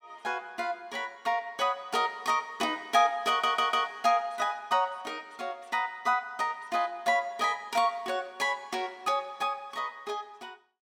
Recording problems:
stutter; at 3.5 s

